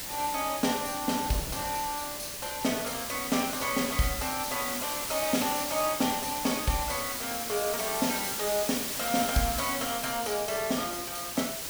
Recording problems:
background hiss; slope 0 dB per octave, SNR 2 dB
wind on the microphone; below 550 Hz, SNR 20 dB

